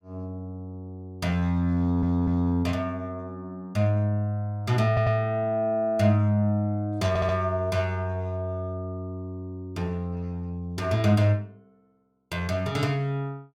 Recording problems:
stutter; at 2 s, at 5 s and at 7 s

